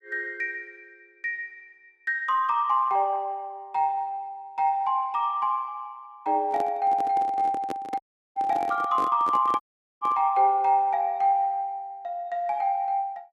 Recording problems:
microphone handling noise; from 6.5 to 10 s; peak -5 dB vs average level
dropout; at 8 s and at 9.5 s

